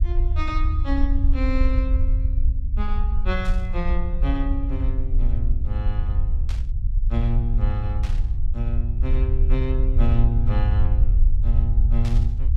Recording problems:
low-frequency rumble; below 60 Hz, SNR -6 dB
burst of static; 4 times, first at 3.5 s; peak -7 dB vs average level

